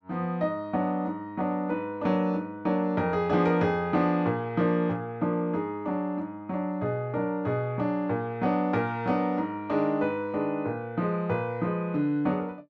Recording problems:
none

